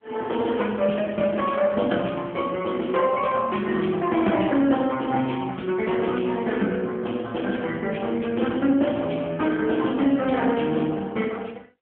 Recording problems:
telephone audio; 170 Hz to 3.3 kHz, AMR-NB

